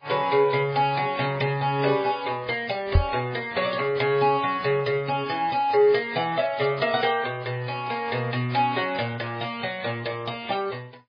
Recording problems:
codec artefacts; MP3, then AAC, log-spectral distance 5 dB, nothing above 4.8 kHz
knock on the microphone; at 3 s; peak +8 dB vs average level

